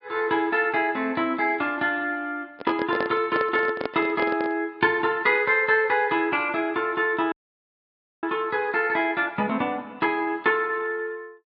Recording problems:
treble missing; nothing above 5.5 kHz
handling noise; from 2.5 to 4.5 s; peak -1 dB vs average level
audio cutting out; at 7.5 s for 1 s

